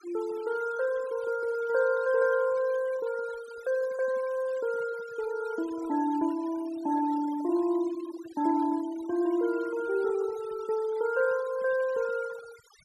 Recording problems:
denoising artefacts; signal-to-artefact ratio 19 dB

